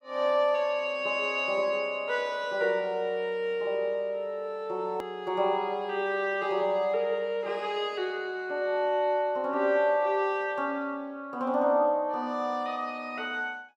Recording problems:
hard cut with a click; at 5 s

